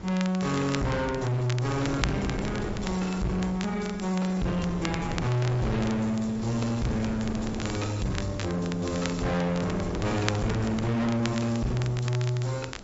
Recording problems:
low-pass filter; nothing above 7.6 kHz
codec artefacts; MP3, log-spectral distance 2 dB
distorted audio; soft clipping, signal-to-distortion ratio 6 dB
background hiss; slope -2 dB per octave, SNR 26 dB
wind noise; below 560 Hz, SNR 8 dB
crackling; vinyl, SNR 13 dB

